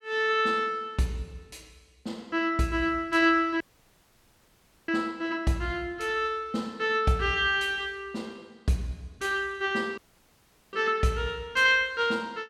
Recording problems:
audio cutting out; at 3.5 s for 1.5 s and at 10 s for 1 s

